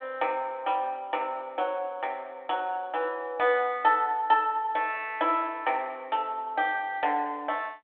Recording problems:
telephone audio; 260 Hz to 3.5 kHz, G.726

